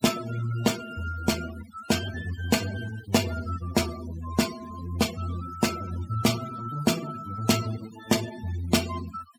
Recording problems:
noise reduction artefacts; signal-to-artefact ratio 11 dB

